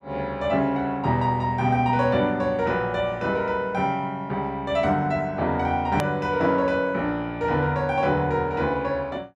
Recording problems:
click at an edit; at 6 s

